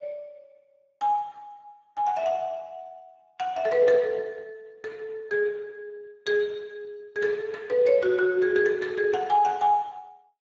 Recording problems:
lossy compression; Speex, log-spectral distance 3 dB

